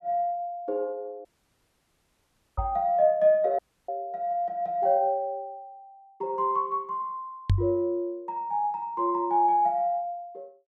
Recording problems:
audio cutting out; at 1.5 s for 1.5 s and at 3.5 s
microphone bump; at 2.5 s and at 7.5 s; peak +6 dB vs average level

